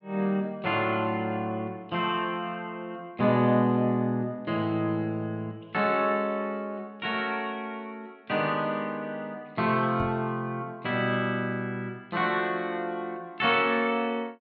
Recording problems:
microphone bump; at 10 s; peak -3 dB vs average level

